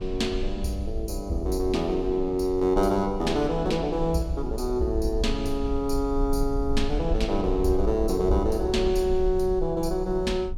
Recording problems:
rumble; below 54 Hz, SNR 8 dB

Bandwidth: 17.5 kHz